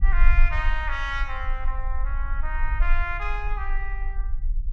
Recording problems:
rumble; below 40 Hz, strongest tone 18 Hz, SNR -3 dB

